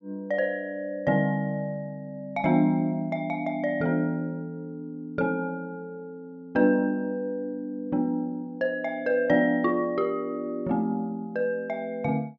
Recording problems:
none

